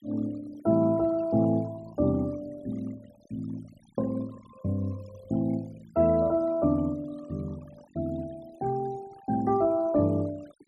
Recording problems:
noise reduction artefacts; signal-to-artefact ratio 23 dB

